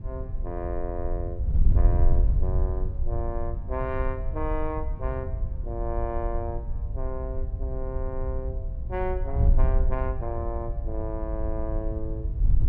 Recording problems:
wind noise; below 70 Hz, SNR -5 dB

